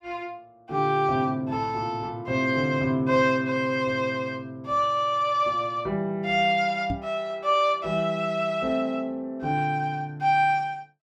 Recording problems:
knock on the microphone; at 7 s; peak -2 dB vs average level

